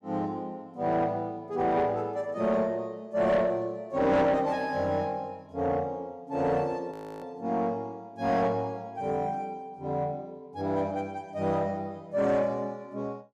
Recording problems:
distorted audio; soft clipping, signal-to-distortion ratio 10 dB
frozen audio; at 7 s

